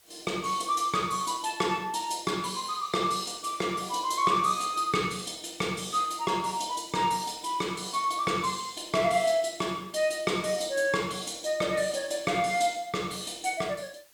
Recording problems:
background hiss; slope 0 dB per octave, SNR 28 dB

